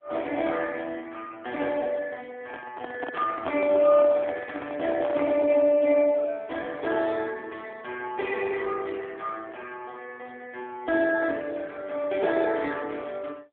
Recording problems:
phone line; 170 Hz to 3 kHz, AMR-NB
microphone handling noise; from 2.5 to 5.5 s; peak -1 dB vs average level

